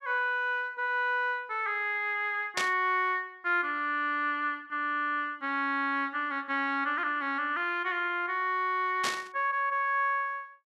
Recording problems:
static burst; at 2.5 s and at 9 s; peak +2 dB vs average level

